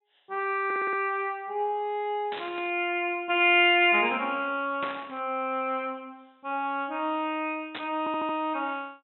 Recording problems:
treble cut off; nothing above 3.9 kHz
audio stuttering; at 0.5 s and at 8 s
burst of static; at 2.5 s, at 5 s and at 7.5 s; peak -5 dB vs average level

